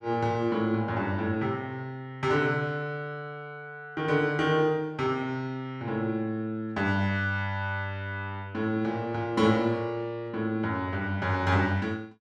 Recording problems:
none

